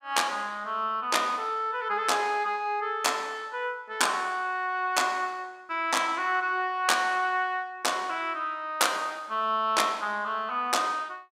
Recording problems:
none

